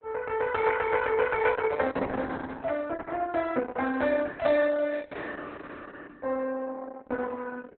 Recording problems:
lossy compression; Opus, log-spectral distance 5 dB, nothing above 3.9 kHz

